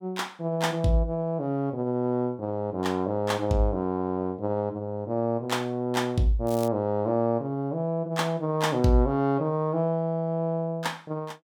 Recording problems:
crackle; at 6.5 s; loose cable, SNR 17 dB

